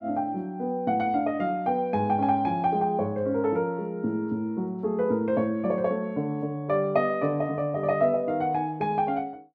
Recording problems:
none

